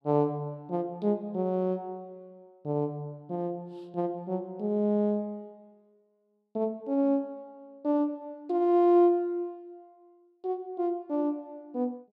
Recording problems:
none

